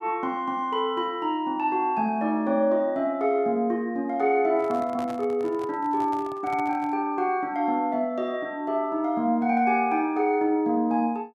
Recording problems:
microphone handling noise; from 4.5 to 7 s; peak -10 dB vs average level

